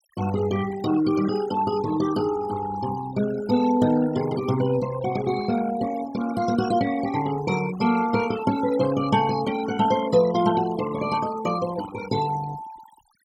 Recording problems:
noise reduction artefacts; signal-to-artefact ratio 13 dB

